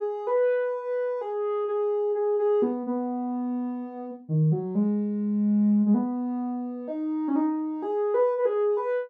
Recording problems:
none

